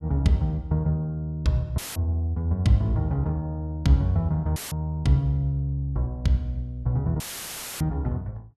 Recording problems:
audio cutting out; at 2 s, at 4.5 s and at 7 s for 0.5 s; filled with static

